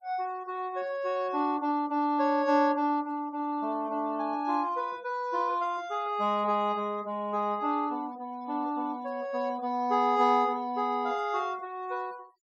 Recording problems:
noise reduction artefacts; signal-to-artefact ratio 27 dB

